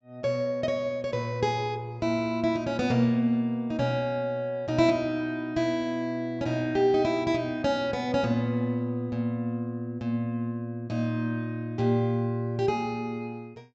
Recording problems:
low-pass filter; nothing above 8 kHz

